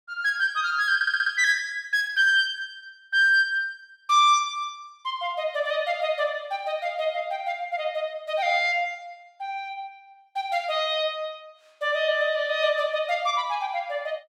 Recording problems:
audio stuttering; at 1 s

